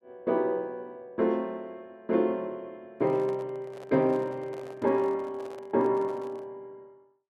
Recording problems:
microphone handling noise; from 3 to 6.5 s; peak -11 dB vs average level

